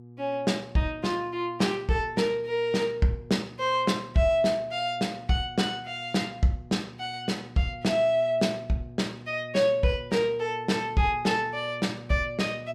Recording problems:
hum; 60 Hz, harmonics up to 720 Hz, SNR 19 dB

